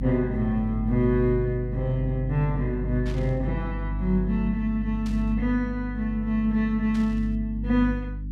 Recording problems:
mains hum; 50 Hz, harmonics up to 300 Hz, SNR 5 dB
burst of static; at 3 s, at 5 s and at 7 s; peak -13 dB vs average level

